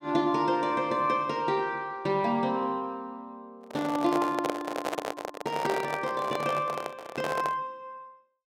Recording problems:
handling noise; from 3.5 to 7.5 s; peak +3 dB vs average level

